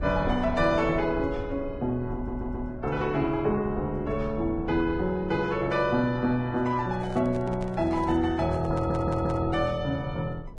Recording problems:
lossy codec; Vorbis, log-spectral distance 2 dB
low-frequency rumble; below 110 Hz, SNR 14 dB
stutter; at 2 s and at 8.5 s
handling noise; from 7 to 9.5 s; peak -10 dB vs average level

